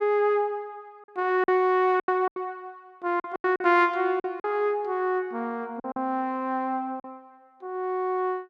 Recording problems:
lost packets; 7% of the sound replaced, filled with silence

